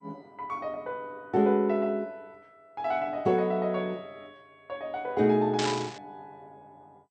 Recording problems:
codec artefacts; MP2, log-spectral distance 2 dB
burst of static; at 5.5 s; peak +1 dB vs average level

